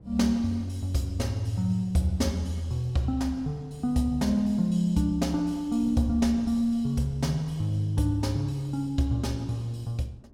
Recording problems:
wind noise; below 230 Hz, SNR 23 dB

